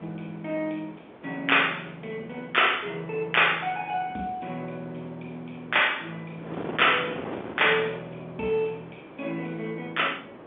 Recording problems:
telephone audio; 220 Hz to 3.5 kHz, G.711
wind noise; below 830 Hz, SNR 16 dB

